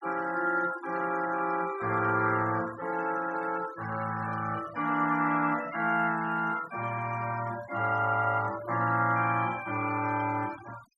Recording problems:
noise reduction artefacts; signal-to-artefact ratio 17 dB

